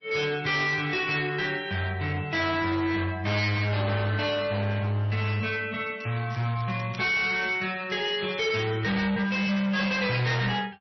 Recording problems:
lossy compression; MP3, then MP3, log-spectral distance 4 dB, nothing above 5.8 kHz
distortion; hard clipping, signal-to-distortion ratio 8 dB
crackle; from 6 to 8.5 s; loose cable, SNR 21 dB

